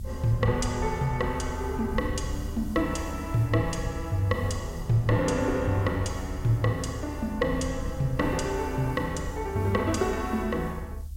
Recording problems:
background hiss; SNR 26 dB
low-frequency rumble; below 80 Hz, SNR 8 dB

